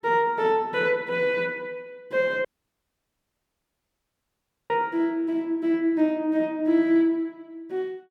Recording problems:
audio cutting out; at 2.5 s for 2.5 s

